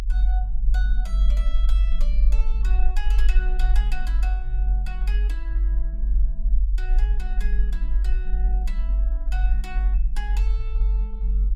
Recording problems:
low-frequency rumble; below 48 Hz, strongest tone 46 Hz, SNR -16 dB

